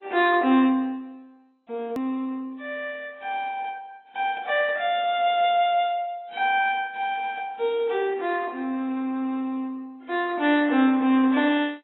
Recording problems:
lossy compression; AAC, then MP2, log-spectral distance 3 dB, nothing above 3.3 kHz
click at an edit; at 2 s

